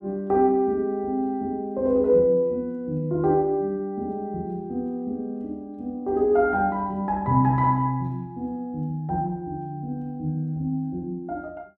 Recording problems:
none

